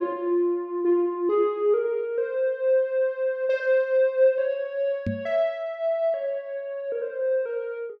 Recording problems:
microphone bump; at 5 s; peak -1 dB vs average level

